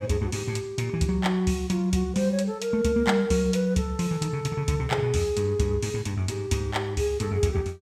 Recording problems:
none

